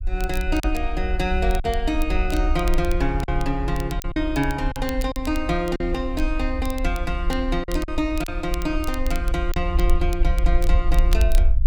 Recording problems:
rumble; below 54 Hz, SNR 1 dB
crackling; vinyl, SNR 15 dB
packet loss; 4% of the sound replaced, filled with silence

